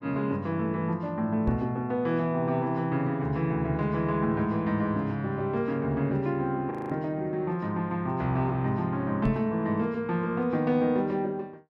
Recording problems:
microphone bump; at 1.5 s and at 9.5 s; peak +3 dB vs average level
frozen audio; at 6.5 s

